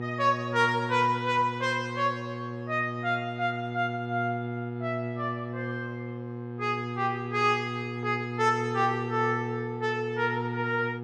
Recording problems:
hum; 60 Hz, harmonics up to 1.3 kHz, SNR 6 dB

